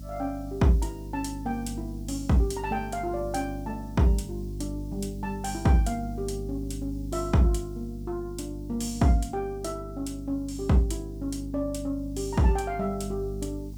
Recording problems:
mains hum; 50 Hz, harmonics up to 300 Hz, SNR 9 dB
background hiss; slope +5 dB per octave, SNR 28 dB

